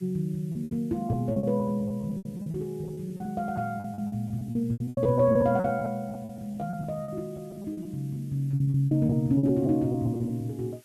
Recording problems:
background hiss; slope +2 dB per octave, SNR 30 dB
packet loss; 17% of the sound replaced, filled with repeated pitch periods

